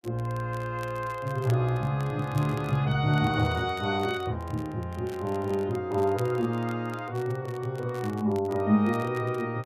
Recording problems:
crackling; vinyl, SNR 23 dB

